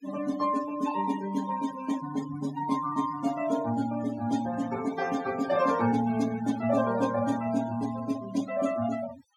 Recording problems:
noise reduction artefacts; signal-to-artefact ratio 13 dB

